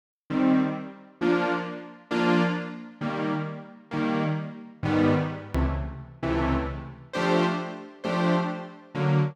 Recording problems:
hard cut with a click; at 5.5 s

